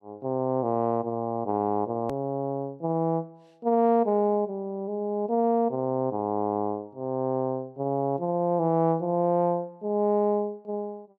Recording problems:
hard cut with a click; at 2 s

